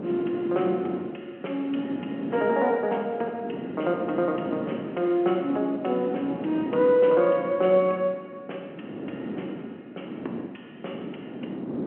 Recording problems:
phone line; 220 Hz to 3.2 kHz, G.711
wind on the microphone; below 410 Hz, SNR 11 dB

